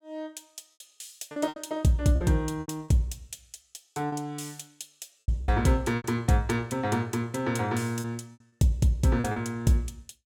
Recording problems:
lost packets; 8% of the sound replaced, filled with repeated pitch periods

